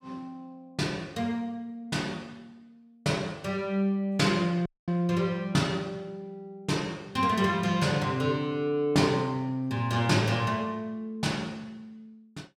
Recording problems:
dropout; at 4.5 s

